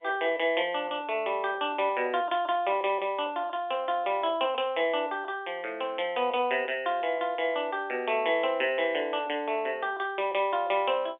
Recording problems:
phone line; 300 Hz to 3.6 kHz, G.711

